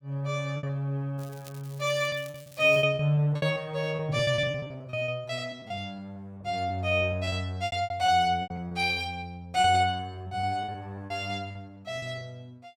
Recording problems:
packet loss; 14% of the sound replaced, filled with repeated pitch periods
crackle; from 1 to 3 s; loose cable, SNR 22 dB

